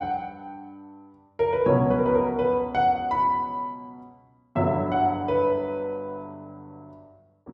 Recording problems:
none

